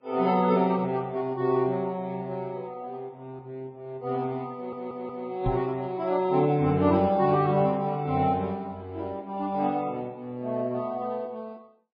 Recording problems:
lossy codec; Vorbis, then MP3, log-spectral distance 2 dB
audio stuttering; at 4.5 s
knock on the microphone; at 5.5 s; peak +1 dB vs average level

